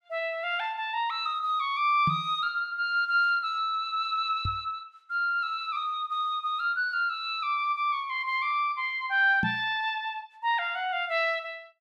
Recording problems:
microphone bump; at 2 s, at 4.5 s and at 9.5 s; peak 0 dB vs average level

